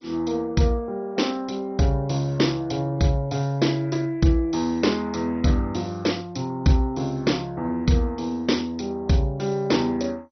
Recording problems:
lossy codec; MP2, log-spectral distance 4 dB, nothing above 6 kHz

